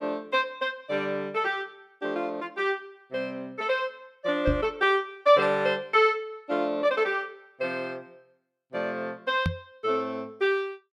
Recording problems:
microphone bump; at 4.5 s and at 9.5 s; peak +3 dB vs average level

